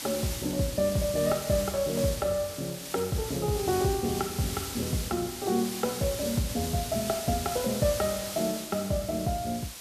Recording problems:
background hiss; slope 0 dB per octave, SNR 7 dB

